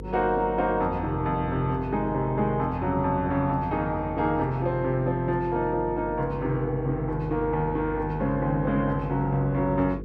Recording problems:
electrical hum; 50 Hz, harmonics up to 500 Hz, SNR 11 dB

